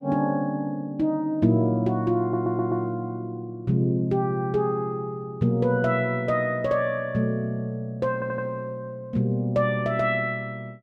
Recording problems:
stutter; at 2 s and at 8 s

